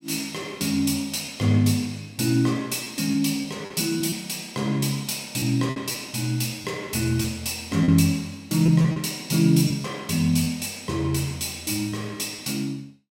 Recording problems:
lost packets; 4% of the sound replaced, filled with repeated pitch periods

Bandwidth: 16 kHz